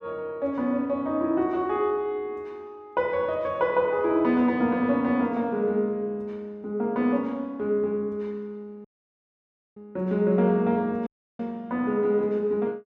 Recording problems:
audio cutting out; at 9 s for 1 s and at 11 s

